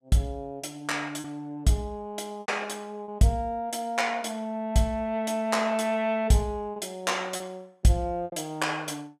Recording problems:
lost packets; 4% of the sound replaced, filled with repeated pitch periods

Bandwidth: 15 kHz